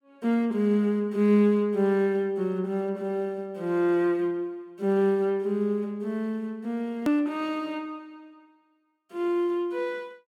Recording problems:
hard cut with a click; at 7 s

